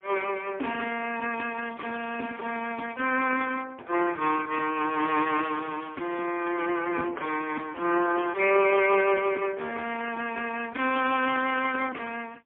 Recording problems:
phone line; 240 Hz to 3.3 kHz, AMR-NB, then MP3
crackle; at 1.5 s and from 4.5 to 6.5 s; loose cable, SNR 23 dB

